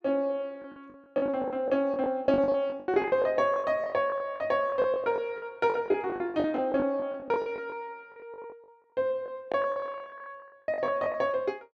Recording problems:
packet loss; 18% of the sound replaced, filled with the last packet

